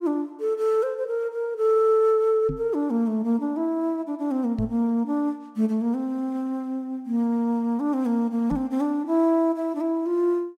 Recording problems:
microphone bump; at 2.5 s, at 4.5 s and at 8.5 s; peak -3 dB vs average level

